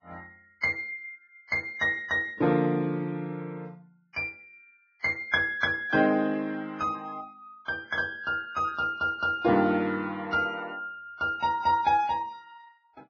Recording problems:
lossy codec; Vorbis, log-spectral distance 2 dB, nothing above 6.5 kHz

